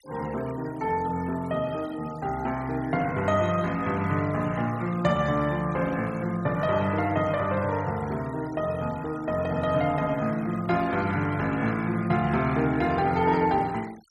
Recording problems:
noise reduction artefacts; signal-to-artefact ratio 21 dB

